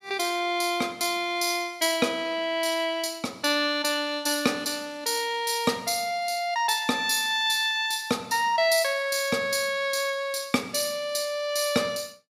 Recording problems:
none

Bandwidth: 15 kHz